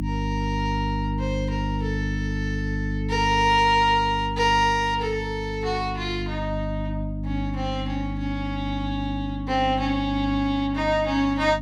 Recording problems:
hum; 50 Hz, harmonics up to 300 Hz, SNR 5 dB

